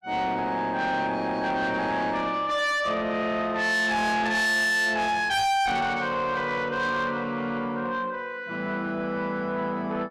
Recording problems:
distorted audio; soft clipping, signal-to-distortion ratio 7 dB

